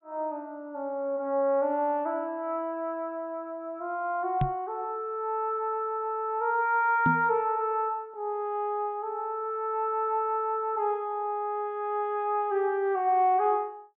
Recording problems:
treble missing; nothing above 4 kHz
microphone bump; at 4.5 s and at 7 s; peak +4 dB vs average level

